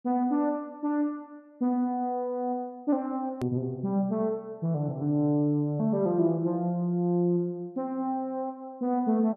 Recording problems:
hard cut with a click; at 3.5 s

